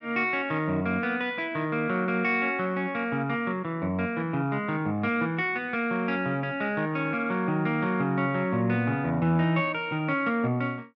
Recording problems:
none

